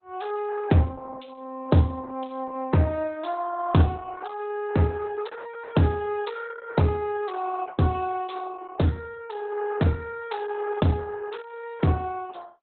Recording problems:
lossy codec; Opus, log-spectral distance 4 dB, nothing above 4 kHz

